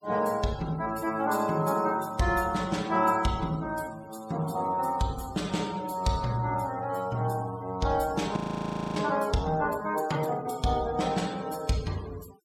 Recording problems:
noise reduction artefacts; signal-to-artefact ratio 19 dB
audio freezing; at 8.5 s for 0.5 s

